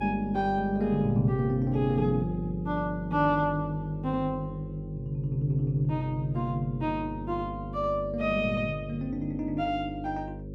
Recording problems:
hum; 50 Hz, harmonics up to 550 Hz, SNR 9 dB

